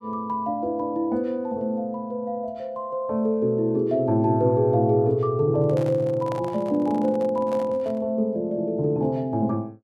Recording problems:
microphone handling noise; from 5.5 to 8 s; peak -8 dB vs average level

